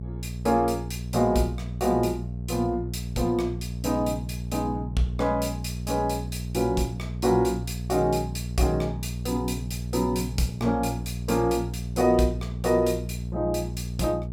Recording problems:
mains hum; 60 Hz, harmonics up to 420 Hz, SNR 6 dB

